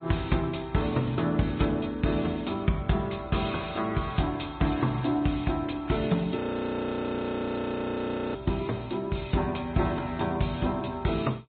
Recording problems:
treble missing; nothing above 3.8 kHz
codec artefacts; MP3, log-spectral distance 6 dB
frozen audio; at 6.5 s for 2 s

